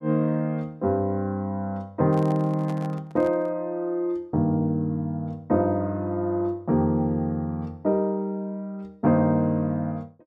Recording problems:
handling noise; from 2 to 3.5 s; peak -11 dB vs average level

